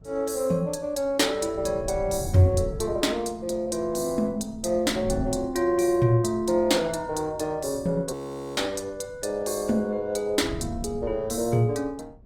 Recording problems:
codec artefacts; Opus, log-spectral distance 3 dB, nothing above 19 kHz
wind noise; below 160 Hz, SNR 14 dB
frozen audio; at 8 s

